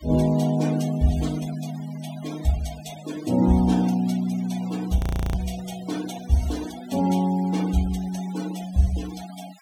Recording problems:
noise reduction artefacts; signal-to-artefact ratio 18 dB
frozen audio; at 5 s

